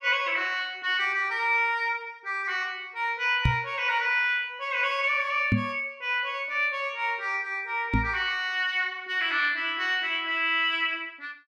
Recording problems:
microphone bump; at 3.5 s, at 5.5 s and at 8 s; peak +5 dB vs average level

